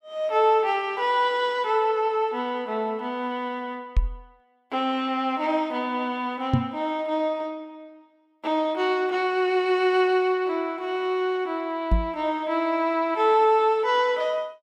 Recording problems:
microphone thump; at 4 s, at 6.5 s and at 12 s; peak +6 dB vs average level

